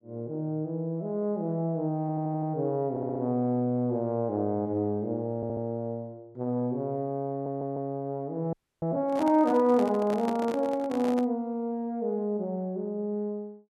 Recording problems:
audio stuttering; 4 times, first at 2 s
audio freezing; at 8.5 s
handling noise; from 9 to 11 s; peak -3 dB vs average level

